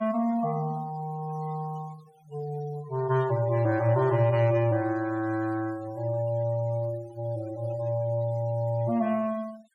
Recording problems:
noise reduction artefacts; signal-to-artefact ratio 22 dB

